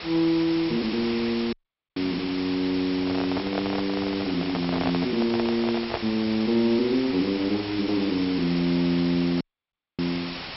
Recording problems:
treble missing; nothing above 5.5 kHz
lossy compression; G.722, log-spectral distance 14 dB
hiss; slope -1 dB per octave, SNR 9 dB
dropout; at 1.5 s and at 9.5 s for 0.5 s
handling noise; from 3 to 6 s; peak +1 dB vs average level

